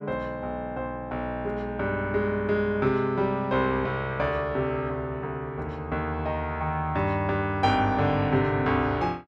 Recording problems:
none

